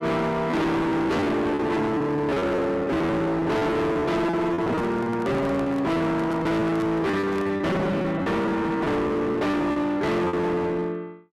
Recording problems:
distorted audio; hard clipping, signal-to-distortion ratio 6 dB
lost packets; 15% of the sound replaced, filled with repeated pitch periods
microphone handling noise; from 4.5 to 7.5 s; peak -8 dB vs average level

